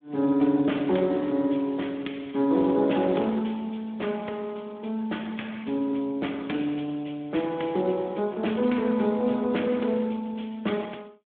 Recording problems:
telephone audio; 170 Hz to 3.5 kHz, Speex

